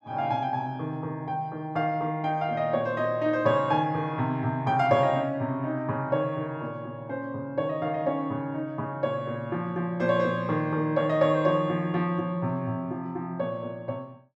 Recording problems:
none

